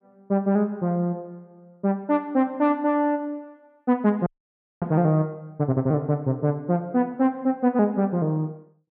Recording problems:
audio freezing; at 4.5 s for 0.5 s

